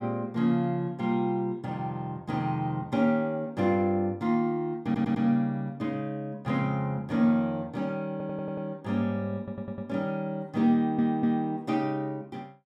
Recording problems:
stutter; 4 times, first at 5 s

